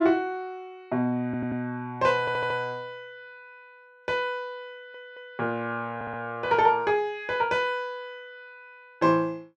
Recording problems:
audio stuttering; 4 times, first at 1.5 s

